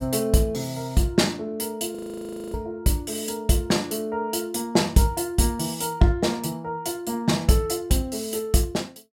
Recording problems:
frozen audio; at 2 s for 0.5 s

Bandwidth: 16 kHz